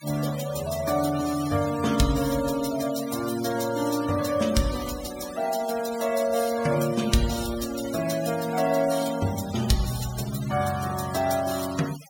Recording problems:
denoising artefacts; signal-to-artefact ratio 12 dB

